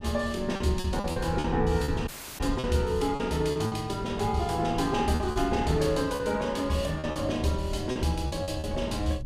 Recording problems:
wind on the microphone; below 100 Hz, SNR 10 dB
packet loss; 9% of the sound replaced, filled with repeated pitch periods
audio cutting out; at 2 s

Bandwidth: 15 kHz